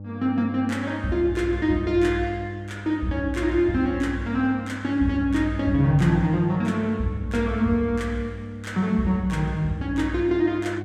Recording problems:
hum; 50 Hz, harmonics up to 600 Hz, SNR 12 dB

